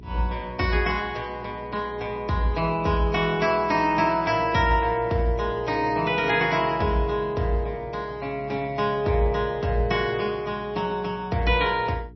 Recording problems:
codec artefacts; MP3, log-spectral distance 2 dB, nothing above 5.7 kHz
hum; 60 Hz, harmonics up to 420 Hz, SNR 20 dB

